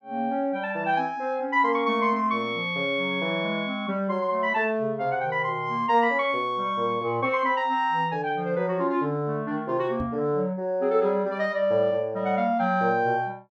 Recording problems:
microphone bump; at 10 s; peak -5 dB vs average level

